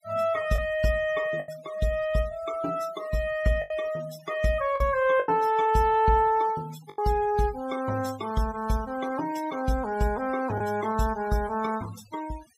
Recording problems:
noise reduction artefacts; signal-to-artefact ratio 20 dB
packet loss; 3% of the sound replaced, filled with the last packet

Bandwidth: 15.5 kHz